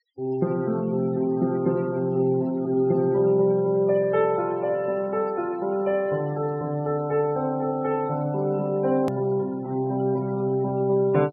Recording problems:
treble cut off; nothing above 5.5 kHz
noise reduction artefacts; signal-to-artefact ratio 23 dB
edit click; at 9 s

